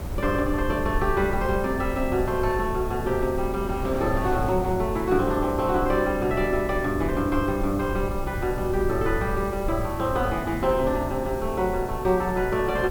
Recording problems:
background hiss; slope 0 dB per octave, SNR 21 dB
rumble; below 84 Hz, SNR 10 dB
wind noise; below 660 Hz, SNR 14 dB

